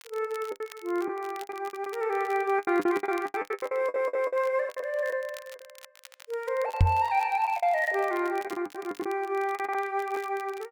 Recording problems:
crackling; vinyl, SNR 22 dB
packet loss; 15% of the sound replaced, filled with the last packet
stutter; at 4 s
microphone bump; at 7 s; peak +10 dB vs average level

